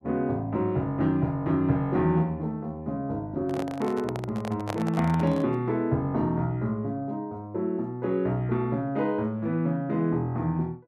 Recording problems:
microphone handling noise; from 3.5 to 5.5 s; peak -1 dB vs average level

